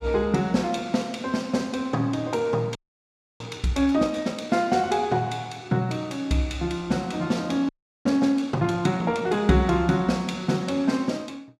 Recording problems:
audio freezing; at 3 s for 0.5 s and at 7.5 s

